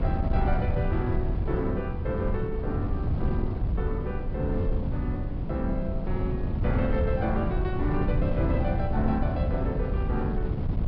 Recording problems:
treble cut off; nothing above 5.5 kHz
wind on the microphone; below 140 Hz, SNR -3 dB

